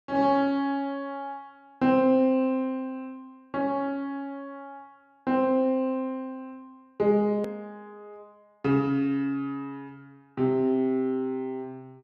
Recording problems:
click at an edit; at 7.5 s

